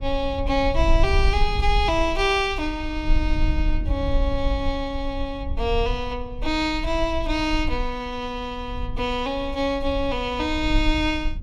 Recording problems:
rumble; below 54 Hz, SNR 4 dB

